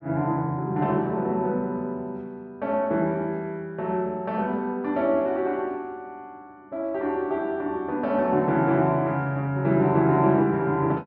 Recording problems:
none

